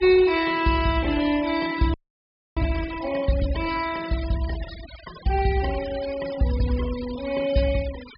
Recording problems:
low-pass filter; nothing above 5.5 kHz
denoising artefacts; signal-to-artefact ratio 15 dB
frozen audio; at 2 s for 0.5 s

